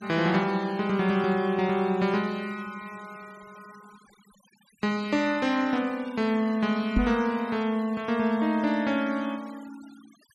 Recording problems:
denoising artefacts; signal-to-artefact ratio 23 dB
microphone thump; at 7 s; peak +6 dB vs average level

